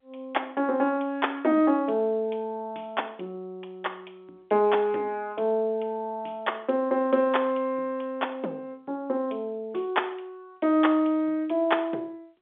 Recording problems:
telephone audio; 240 Hz to 3.6 kHz, G.711

